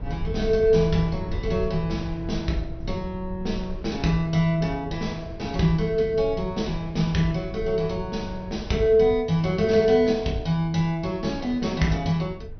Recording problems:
low-pass filter; nothing above 6 kHz
low-frequency rumble; below 98 Hz, SNR 13 dB

